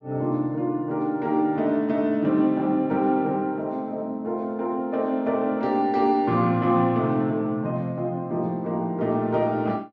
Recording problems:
treble missing; nothing above 8 kHz

